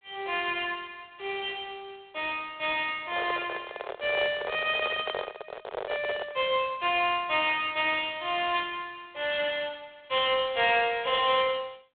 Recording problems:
phone line; 370 Hz to 3.7 kHz, G.726
handling noise; from 3 to 6.5 s; peak -2 dB vs average level

